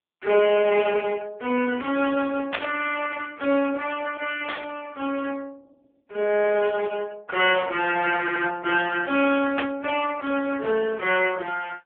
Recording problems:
telephone audio; 300 Hz to 3.2 kHz, AMR-NB
burst of static; at 2.5 s, at 4.5 s and at 9.5 s; peak +3 dB vs average level
audio stuttering; at 8 s

